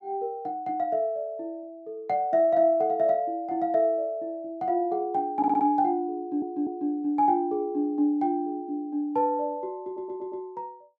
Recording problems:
stutter; at 5.5 s, at 6 s and at 10 s

